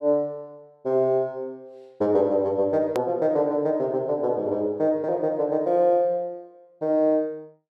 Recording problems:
edit click; at 3 s

